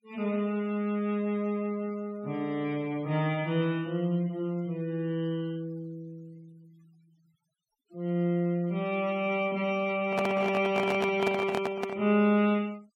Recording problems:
noise reduction artefacts; signal-to-artefact ratio 25 dB
microphone handling noise; from 10 to 12 s; peak +1 dB vs average level

